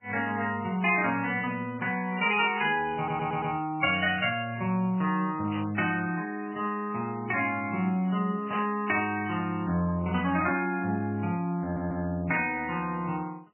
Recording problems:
lossy compression; MP3, log-spectral distance 3 dB, nothing above 2.6 kHz
stutter; at 3 s and at 12 s
burst of static; at 5.5 s, at 8.5 s and at 10 s; peak -7 dB vs average level

